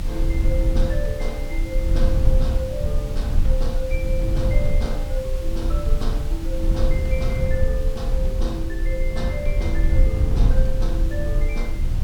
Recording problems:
hiss; slope -2 dB per octave, SNR 12 dB
low-frequency rumble; below 64 Hz, strongest tone 26 Hz, SNR -7 dB

